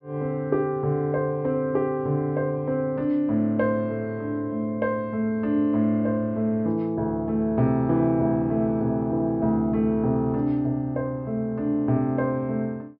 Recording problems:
low-pass filter; nothing above 5.5 kHz

